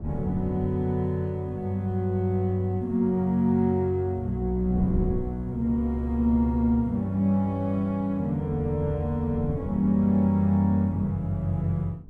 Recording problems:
wind noise; below 200 Hz, SNR 14 dB

